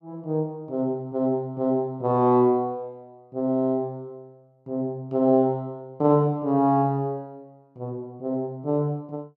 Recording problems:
none

